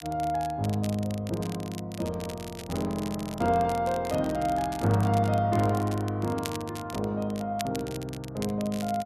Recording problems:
crackle; vinyl, SNR 15 dB

